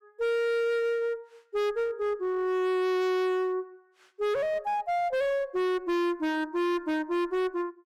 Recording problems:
distortion; hard clipping, uneven, signal-to-distortion ratio 10 dB

